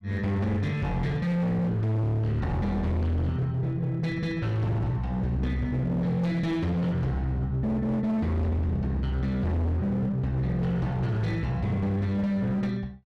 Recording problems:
distortion; hard clipping, signal-to-distortion ratio 7 dB

